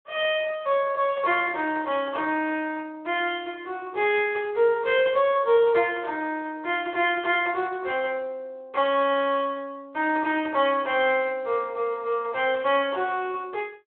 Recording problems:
phone line; 320 Hz to 3.4 kHz, Speex

